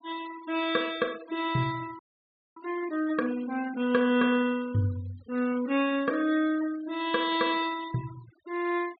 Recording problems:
treble missing; nothing above 4.7 kHz
denoising artefacts; signal-to-artefact ratio 18 dB
audio freezing; at 2 s for 0.5 s

